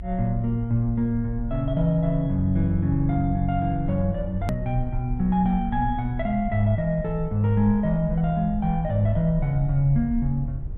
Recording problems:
low-pass filter; nothing above 4 kHz
low-frequency rumble; below 58 Hz, SNR 11 dB
hard cut with a click; at 4.5 s

